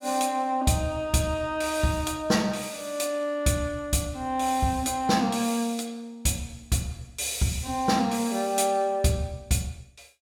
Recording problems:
none

